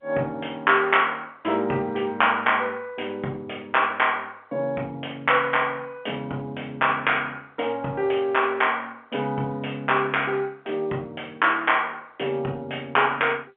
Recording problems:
telephone audio; 170 Hz to 3.3 kHz, G.711

